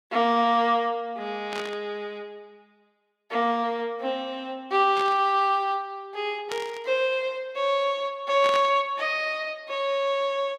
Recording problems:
burst of static; 4 times, first at 1.5 s; peak -4 dB vs average level

